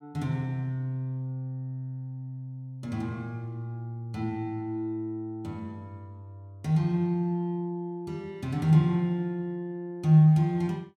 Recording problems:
none

